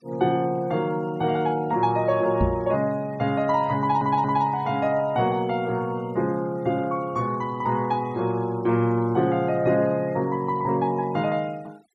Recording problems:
denoising artefacts; signal-to-artefact ratio 27 dB
microphone bump; at 2.5 s; peak +3 dB vs average level
stutter; at 4 s

